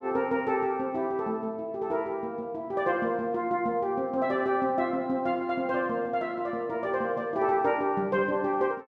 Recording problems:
none

